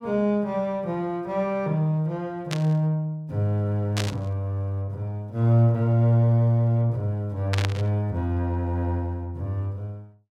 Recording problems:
static burst; at 2.5 s, at 4 s and at 7.5 s; peak -1 dB vs average level

